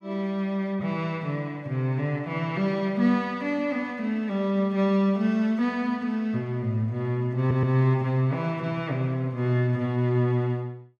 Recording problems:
audio stuttering; at 7.5 s

